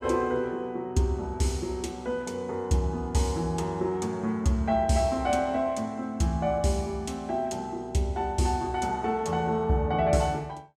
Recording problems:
none

